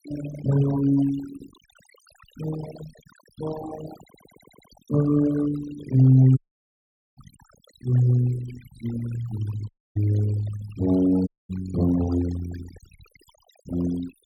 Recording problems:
noise reduction artefacts; signal-to-artefact ratio 16 dB
audio stuttering; at 4 s
dropout; at 6.5 s for 1 s, at 9.5 s and at 11 s

